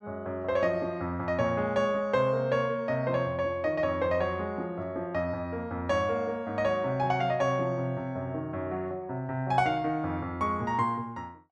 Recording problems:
none

